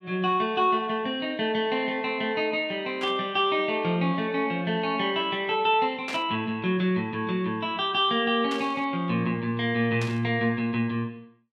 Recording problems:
burst of static; 4 times, first at 3 s; peak -5 dB vs average level

